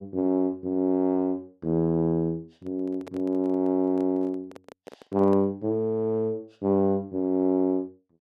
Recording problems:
handling noise; from 2.5 to 5.5 s; peak -11 dB vs average level

